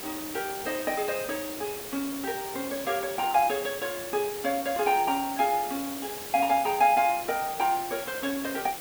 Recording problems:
background hiss; slope -3 dB per octave, SNR 8 dB

